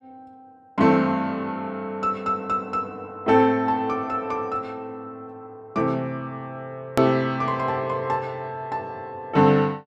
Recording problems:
edit click; at 7 s

